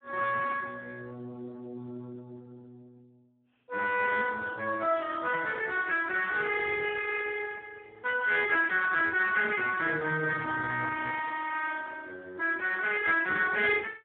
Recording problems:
telephone audio; 220 Hz to 2.9 kHz, Speex

